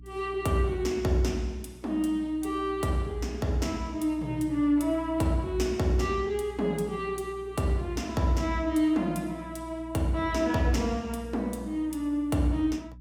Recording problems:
mains hum; 60 Hz, harmonics up to 300 Hz, SNR 17 dB

